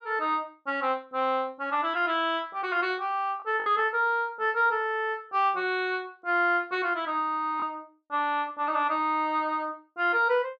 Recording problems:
packet loss; 1% of the sound replaced, filled with the last packet

